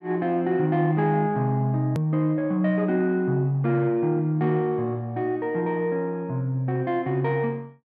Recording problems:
click at an edit; at 2 s

